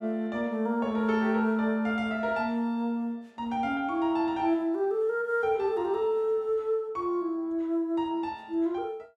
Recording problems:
none

